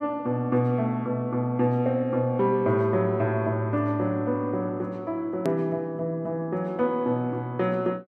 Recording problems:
hard cut with a click; at 5.5 s

